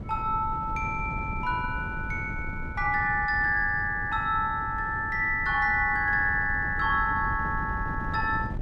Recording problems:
wind on the microphone; below 170 Hz, SNR 11 dB

